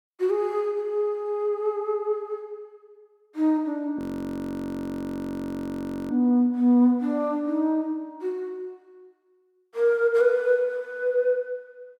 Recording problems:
frozen audio; at 4 s for 2 s

